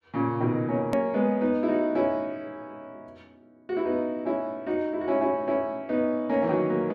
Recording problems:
hard cut with a click; at 1 s

